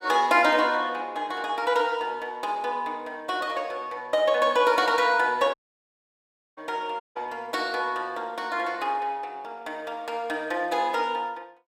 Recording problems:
dropout; at 5.5 s for 1 s and at 7 s

